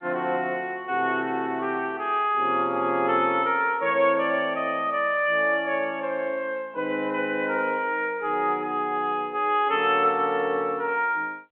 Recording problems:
phone line; 220 Hz to 3.5 kHz, G.711

